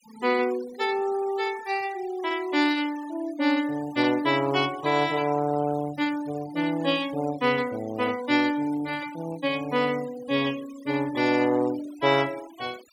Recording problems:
noise reduction artefacts; signal-to-artefact ratio 18 dB

